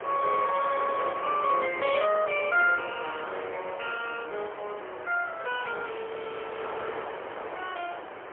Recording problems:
telephone audio; 340 Hz to 3.3 kHz, AMR-NB, then MP3
wind on the microphone; below 1.5 kHz, SNR 10 dB

